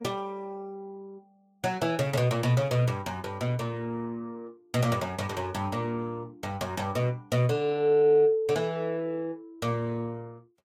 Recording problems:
lossy codec; Vorbis, log-spectral distance 2 dB, nothing above 16 kHz

